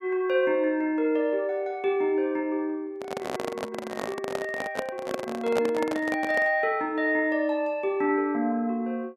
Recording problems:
microphone handling noise; from 3 to 6.5 s; peak +2 dB vs average level

